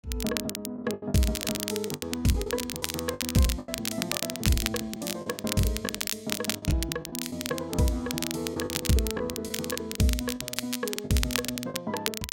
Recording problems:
crackling; vinyl, SNR 3 dB
packet loss; 14% of the sound replaced, filled with the last packet

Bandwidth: 16 kHz